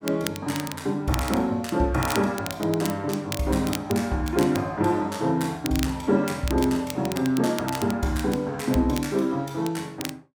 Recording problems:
crackle; vinyl, SNR 12 dB

